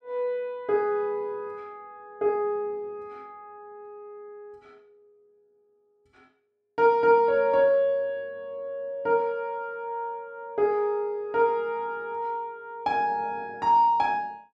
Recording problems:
none

